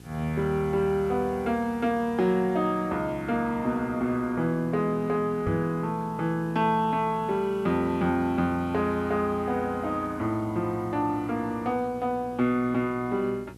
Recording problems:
electrical hum; 60 Hz, harmonics up to 900 Hz, SNR 20 dB
background hiss; slope +1 dB per octave, SNR 29 dB
knock on the microphone; at 5.5 s; peak -2 dB vs average level

